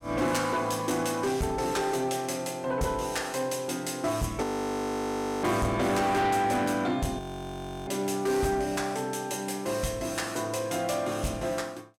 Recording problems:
distortion; soft clipping, signal-to-distortion ratio 10 dB
frozen audio; at 4.5 s for 1 s and at 7 s for 0.5 s

